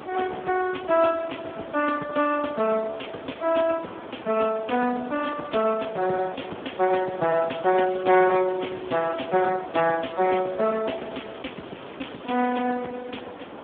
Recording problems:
telephone audio; 260 Hz to 3.3 kHz, Speex
hiss; SNR 14 dB
crackle; from 7.5 to 9.5 s and from 11 to 12 s; loose cable, SNR 27 dB

